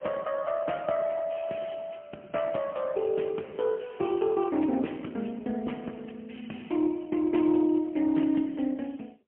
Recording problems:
phone line; 190 Hz to 3.1 kHz, AMR-NB, then MP3

